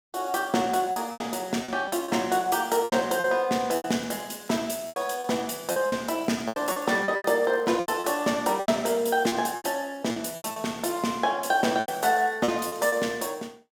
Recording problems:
lost packets; 12% of the sound replaced, filled with repeated pitch periods
crackling; from 3.5 to 5.5 s, from 6 to 8 s and from 12 to 13 s; loose cable, SNR 29 dB

